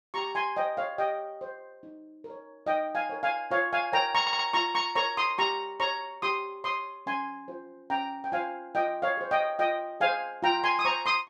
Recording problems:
stutter; at 4 s

